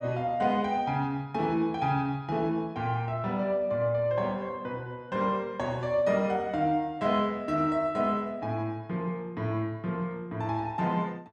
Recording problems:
none

